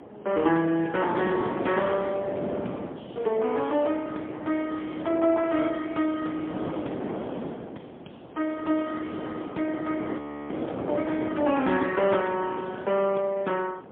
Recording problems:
telephone audio; 220 Hz to 3.4 kHz, AMR-NB, then MP3
wind on the microphone; below 640 Hz, SNR 8 dB
audio freezing; at 10 s

